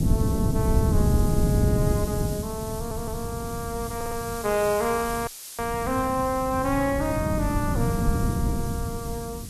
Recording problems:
background hiss; slope +3 dB per octave, SNR 10 dB
wind on the microphone; below 190 Hz, SNR -1 dB
stutter; at 3 s and at 4 s
audio cutting out; at 5.5 s

